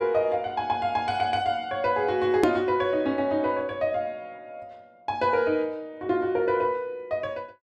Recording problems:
click at an edit; at 2.5 s

